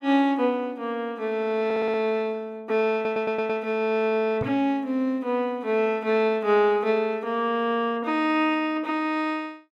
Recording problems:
audio stuttering; at 1.5 s and at 3 s
microphone thump; at 4.5 s; peak -4 dB vs average level

